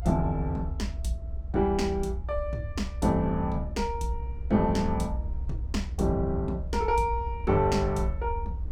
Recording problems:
low-frequency rumble; below 76 Hz, strongest tone 60 Hz, SNR 6 dB

